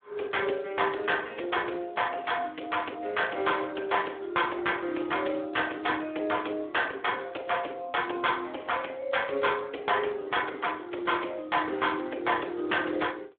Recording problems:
phone line; 280 Hz to 3.6 kHz, Speex

